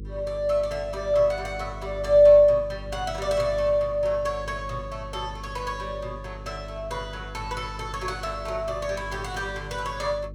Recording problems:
hum; 50 Hz, harmonics up to 500 Hz, SNR 15 dB

